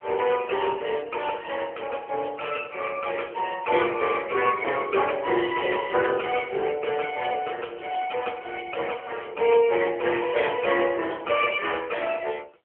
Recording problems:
telephone audio; 300 Hz to 2.9 kHz, AMR-NB

